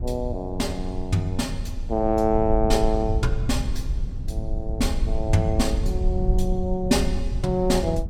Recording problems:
rumble; below 66 Hz, SNR 4 dB

